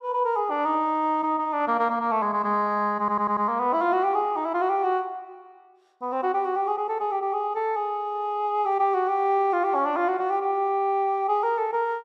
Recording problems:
audio stuttering; at 3 s

